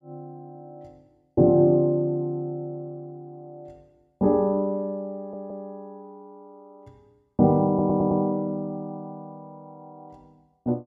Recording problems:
stutter; at 5 s and at 7.5 s

